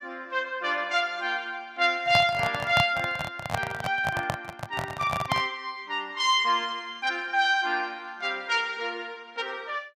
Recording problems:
handling noise; from 2 to 5.5 s; peak +4 dB vs average level

